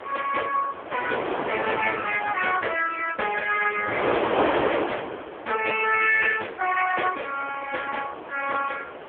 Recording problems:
phone line; 370 Hz to 3.3 kHz, AMR-NB
wind noise; below 1.3 kHz, SNR 5 dB

